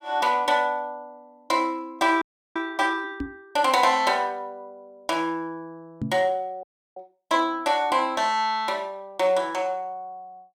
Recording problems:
frozen audio; at 2 s and at 6.5 s
microphone bump; at 3 s and at 6 s; peak -1 dB vs average level

